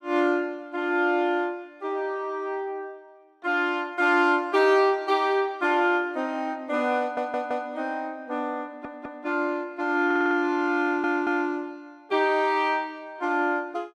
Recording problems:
audio stuttering; 4 times, first at 7 s

